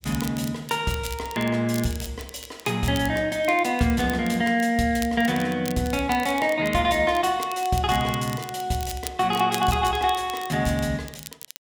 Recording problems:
crackling; vinyl, SNR 16 dB

